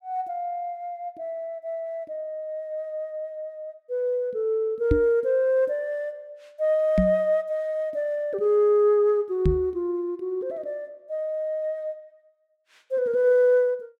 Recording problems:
microphone thump; at 5 s, at 7 s and at 9.5 s; peak +6 dB vs average level

